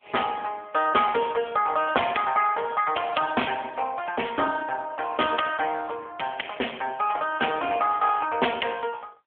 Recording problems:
phone line; 320 Hz to 3.4 kHz, AMR-NB

